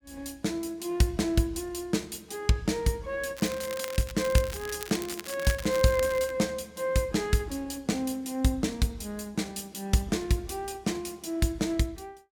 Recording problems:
crackle; from 3.5 to 6.5 s; loose cable, SNR 11 dB

